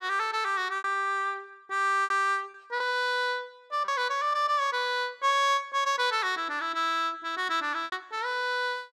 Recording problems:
lost packets; 5% of the sound replaced, filled with repeated pitch periods

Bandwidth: 14.5 kHz